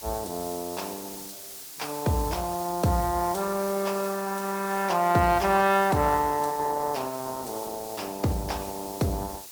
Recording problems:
lossy codec; Opus, log-spectral distance 3 dB, nothing above 20.1 kHz
background hiss; slope +1 dB per octave, SNR 12 dB

